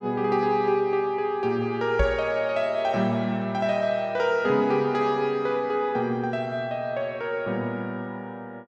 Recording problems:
microphone bump; at 2 s; peak +3 dB vs average level

